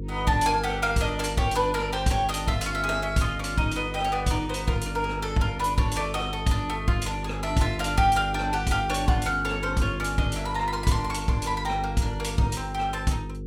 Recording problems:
hum; 50 Hz, harmonics up to 500 Hz, SNR 8 dB

